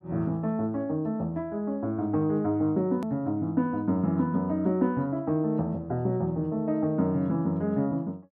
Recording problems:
hard cut with a click; at 3 s

